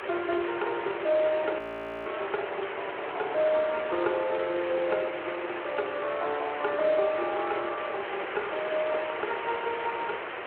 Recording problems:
telephone audio; 300 Hz to 3.3 kHz, Speex
hiss; SNR 6 dB
wind on the microphone; below 510 Hz, SNR 20 dB
audio freezing; at 1.5 s

